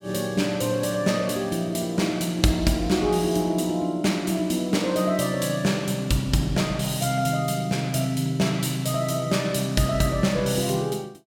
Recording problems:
none

